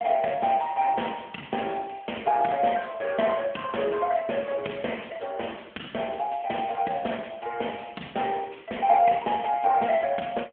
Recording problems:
telephone audio; 240 Hz to 3.3 kHz, AMR-NB

